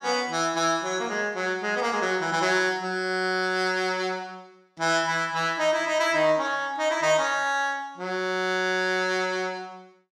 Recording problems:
none

